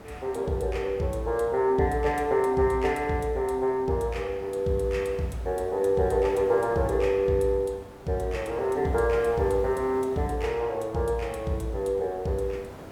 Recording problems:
background hiss; SNR 18 dB

